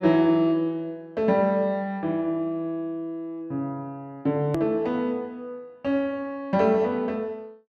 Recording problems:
click at an edit; at 4.5 s

